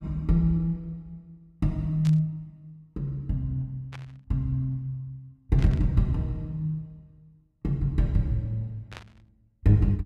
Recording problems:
burst of static; 4 times, first at 2 s; peak -9 dB vs average level

